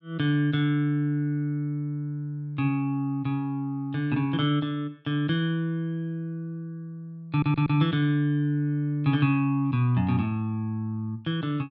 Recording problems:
stutter; at 7.5 s

